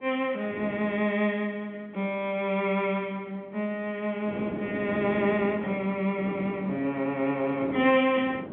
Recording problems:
telephone audio; 150 Hz to 3.7 kHz, G.711
wind noise; below 440 Hz, SNR 11 dB

